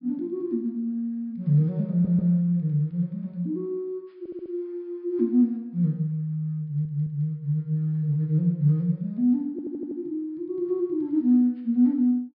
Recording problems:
treble cut off; nothing above 5.5 kHz
audio stuttering; 4 times, first at 2 s

